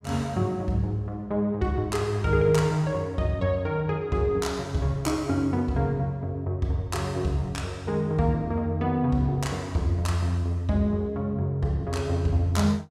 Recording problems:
none

